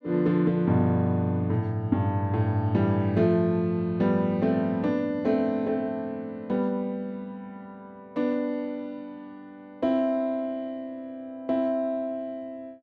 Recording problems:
none

